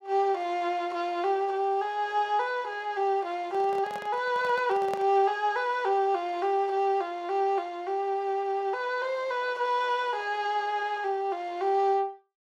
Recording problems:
handling noise; from 3.5 to 5 s; peak -4 dB vs average level

